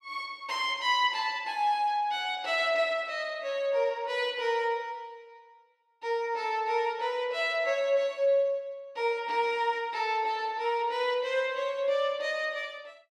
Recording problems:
none

